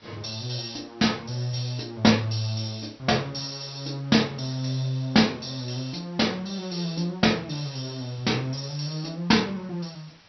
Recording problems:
low-pass filter; nothing above 5.7 kHz
hiss; slope -1 dB per octave, SNR 27 dB

